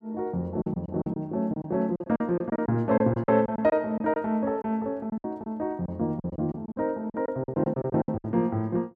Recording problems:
packet loss; 13% of the sound replaced, filled with silence

